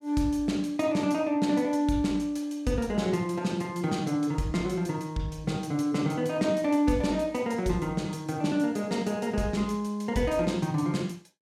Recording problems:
none

